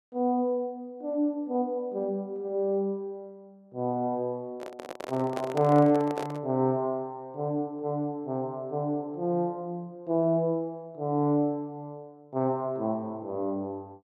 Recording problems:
microphone handling noise; from 4.5 to 6.5 s; peak -2 dB vs average level

